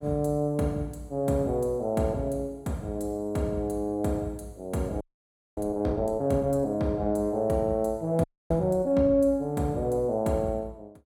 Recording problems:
audio freezing; at 5 s for 0.5 s and at 8 s

